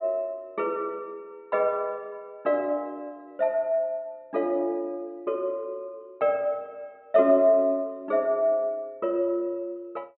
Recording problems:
low-pass filter; nothing above 4 kHz

